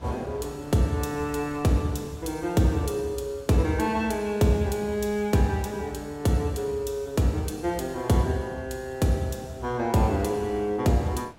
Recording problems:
wind on the microphone; below 1.1 kHz, SNR 25 dB

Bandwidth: 16.5 kHz